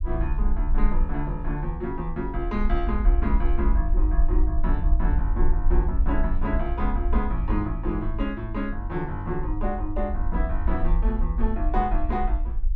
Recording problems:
low-frequency rumble; below 50 Hz, SNR -2 dB

